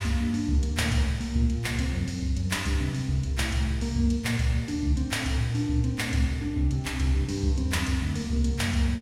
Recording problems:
none

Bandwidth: 16 kHz